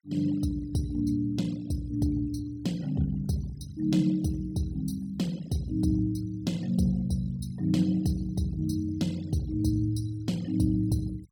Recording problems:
denoising artefacts; signal-to-artefact ratio 21 dB

